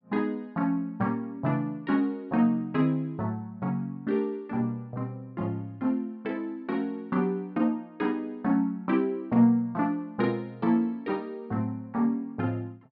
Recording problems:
low-pass filter; nothing above 5.5 kHz

